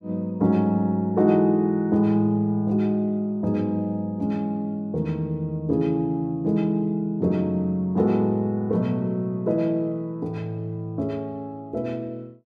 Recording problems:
none

